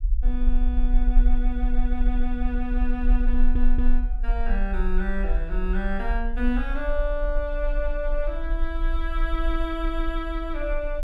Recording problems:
low-frequency rumble; below 40 Hz, strongest tone 22 Hz, SNR -3 dB
stutter; at 3.5 s

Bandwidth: 14.5 kHz